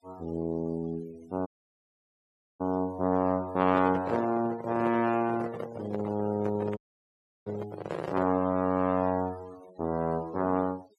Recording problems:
noise reduction artefacts; signal-to-artefact ratio 20 dB
dropout; at 1.5 s for 1 s and at 7 s for 0.5 s
handling noise; from 3.5 to 8.5 s; peak -1 dB vs average level

